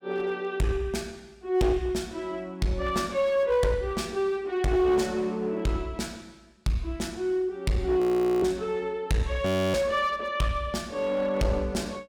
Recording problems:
distorted audio; hard clipping, uneven, signal-to-distortion ratio 9 dB
audio freezing; at 8 s and at 9.5 s

